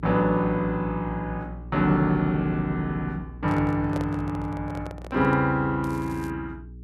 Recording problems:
electrical hum; 60 Hz, harmonics up to 420 Hz, SNR 15 dB
handling noise; from 3.5 to 5.5 s; peak -5 dB vs average level
crackle; at 6 s; loose cable, SNR 26 dB

